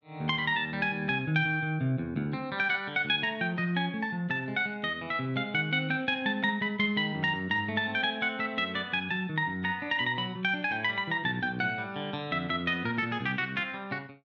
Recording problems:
none

